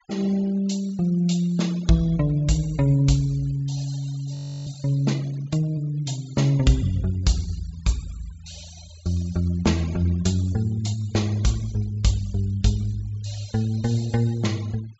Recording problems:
low-pass filter; nothing above 8 kHz
noise reduction artefacts; signal-to-artefact ratio 23 dB
frozen audio; at 4.5 s

